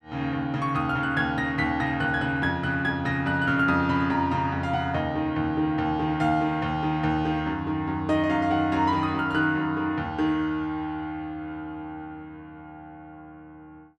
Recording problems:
none

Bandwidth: 13 kHz